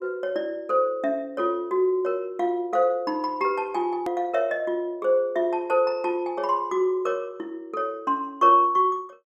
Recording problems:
hard cut with a click; at 4 s

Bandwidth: 14.5 kHz